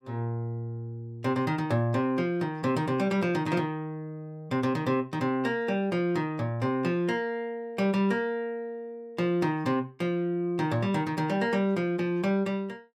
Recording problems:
none

